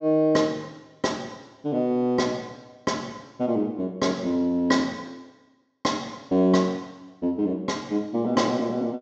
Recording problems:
treble missing; nothing above 8 kHz

